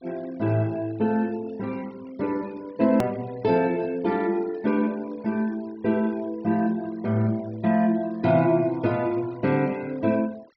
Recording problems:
treble missing; nothing above 5.7 kHz
denoising artefacts; signal-to-artefact ratio 25 dB
hard cut with a click; at 3 s

